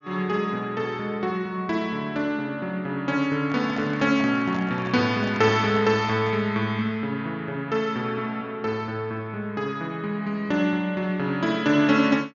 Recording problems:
treble missing; nothing above 7 kHz
microphone handling noise; from 3.5 to 6.5 s; peak -8 dB vs average level

